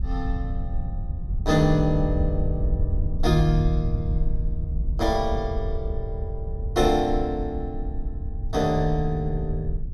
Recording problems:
wind noise; below 76 Hz, SNR 3 dB

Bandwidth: 15 kHz